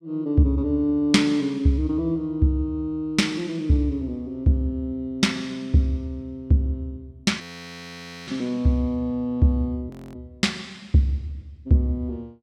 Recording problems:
frozen audio; at 7.5 s for 1 s and at 10 s

